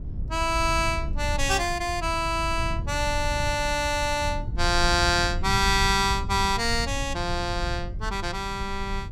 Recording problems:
low-frequency rumble; below 96 Hz, SNR 8 dB

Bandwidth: 16 kHz